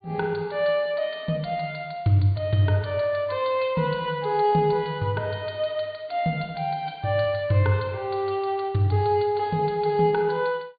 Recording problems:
treble cut off; nothing above 4.6 kHz

